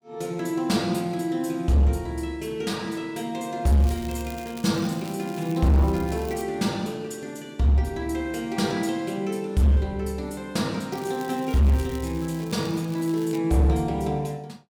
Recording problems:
distortion; hard clipping, signal-to-distortion ratio 12 dB
crackle; from 3.5 to 6.5 s, from 11 to 13 s and at 13 s; loose cable, SNR 20 dB

